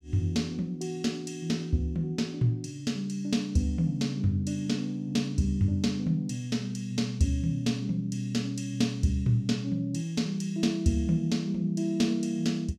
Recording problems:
none

